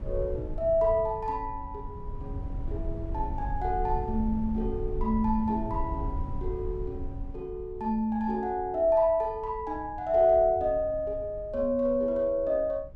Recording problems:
low-frequency rumble; below 82 Hz, SNR 11 dB

